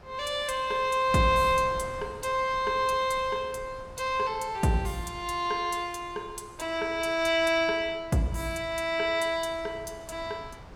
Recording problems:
wind on the microphone; below 770 Hz, SNR 20 dB

